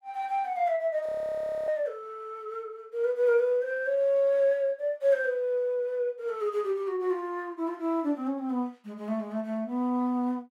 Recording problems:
frozen audio; at 1 s for 0.5 s

